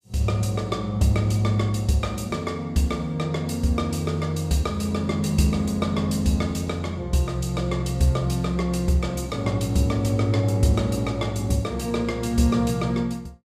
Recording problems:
none

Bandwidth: 15 kHz